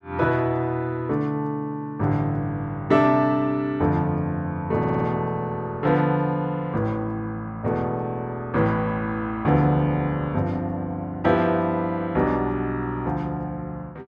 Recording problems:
stutter; at 5 s

